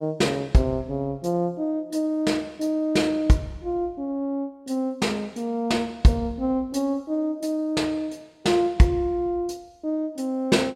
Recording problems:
none

